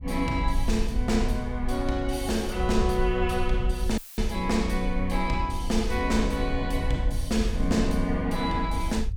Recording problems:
rumble; below 62 Hz, SNR 5 dB
audio cutting out; at 4 s; filled with static

